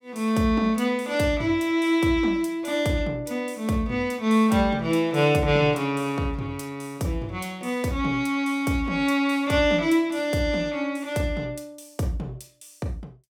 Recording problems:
none

